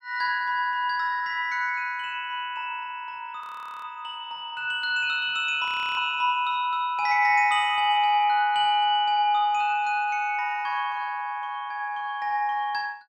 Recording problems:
audio freezing; at 3.5 s and at 5.5 s

